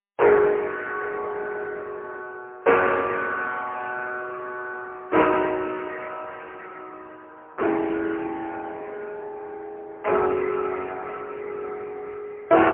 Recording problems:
telephone audio; 280 Hz to 3.1 kHz, AMR-NB, then MP3

